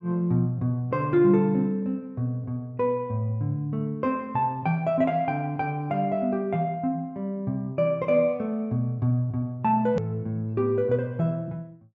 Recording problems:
low-pass filter; nothing above 8 kHz
hard cut with a click; at 10 s

